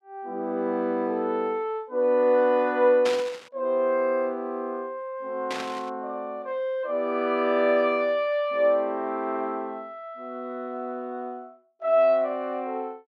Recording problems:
static burst; at 3 s and at 5.5 s; peak -2 dB vs average level

